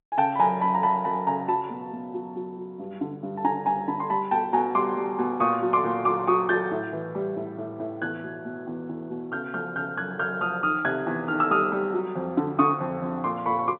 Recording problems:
telephone audio; 150 Hz to 3.6 kHz, G.711

